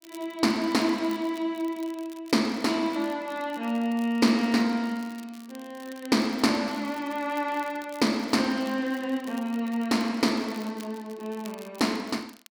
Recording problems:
crackle; vinyl, SNR 23 dB

